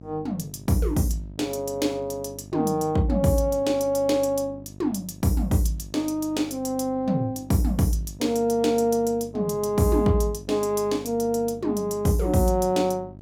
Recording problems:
hum; 50 Hz, harmonics up to 700 Hz, SNR 19 dB

